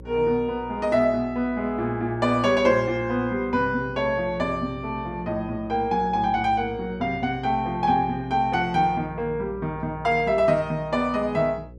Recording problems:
hum; 60 Hz, harmonics up to 540 Hz, SNR 19 dB

